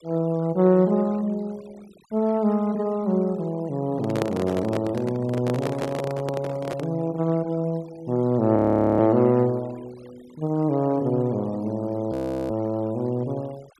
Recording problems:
noise reduction artefacts; signal-to-artefact ratio 26 dB
handling noise; from 4 to 7 s; peak +1 dB vs average level
audio freezing; at 8.5 s and at 12 s

